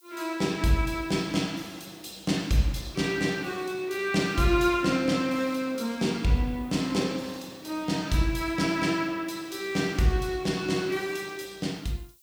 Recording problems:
hiss; SNR 29 dB

